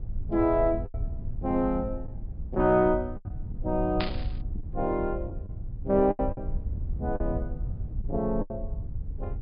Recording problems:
treble cut off; nothing above 5.1 kHz
rumble; below 90 Hz, SNR 8 dB
packet loss; 8% of the sound replaced, filled with the last packet
static burst; at 4 s; peak 0 dB vs average level

